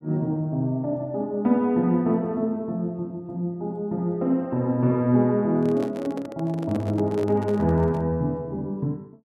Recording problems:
handling noise; from 5.5 to 8 s; peak -6 dB vs average level

